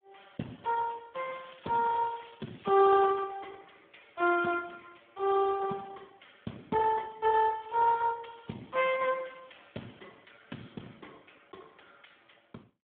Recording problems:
phone line; 170 Hz to 3.1 kHz, Speex
crackling; from 1 to 3 s and at 7.5 s; loose cable, SNR 27 dB

